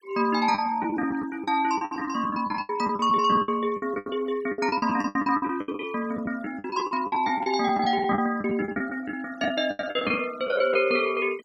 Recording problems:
denoising artefacts; signal-to-artefact ratio 23 dB
packet loss; 18% of the sound replaced, filled with the last packet

